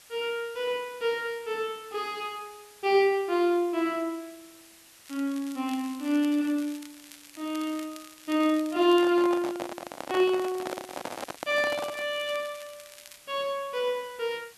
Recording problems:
background hiss; slope +1 dB per octave, SNR 23 dB
crackling; from 5 to 9 s and from 10 to 13 s; loose cable, SNR 20 dB
handling noise; from 9 to 12 s; peak -3 dB vs average level

